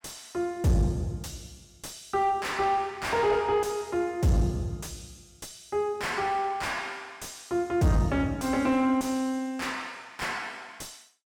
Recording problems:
distorted audio; soft clipping, signal-to-distortion ratio 7 dB

